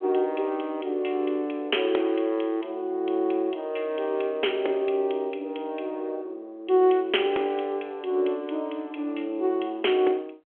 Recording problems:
telephone audio; 260 Hz to 3.3 kHz, G.726

